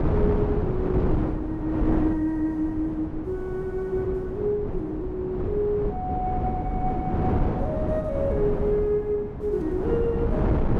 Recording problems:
wind noise; below 350 Hz, SNR 1 dB

